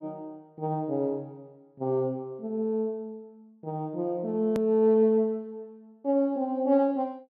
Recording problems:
hard cut with a click; at 4.5 s

